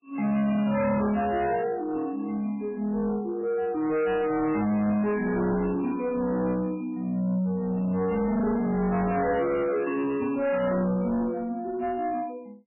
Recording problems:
codec artefacts; MP3, log-spectral distance 2 dB, nothing above 2.9 kHz
distortion; soft clipping, signal-to-distortion ratio 7 dB

